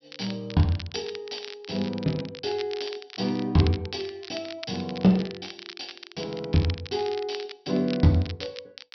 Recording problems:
treble missing; nothing above 5.6 kHz
crackle; vinyl, SNR 14 dB

